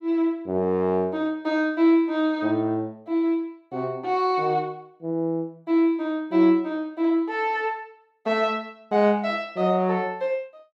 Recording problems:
none

